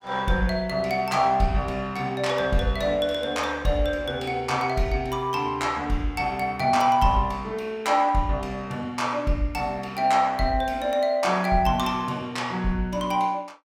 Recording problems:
none

